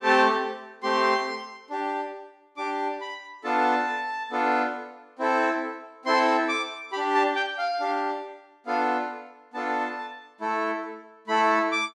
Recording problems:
none

